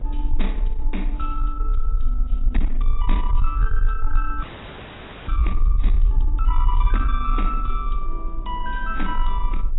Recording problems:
lossy codec; AAC, log-spectral distance 3 dB, nothing above 3.8 kHz
distortion; soft clipping, signal-to-distortion ratio 11 dB
low-frequency rumble; below 40 Hz, SNR -5 dB
wind noise; below 320 Hz, SNR 15 dB
frozen audio; at 4.5 s for 1 s

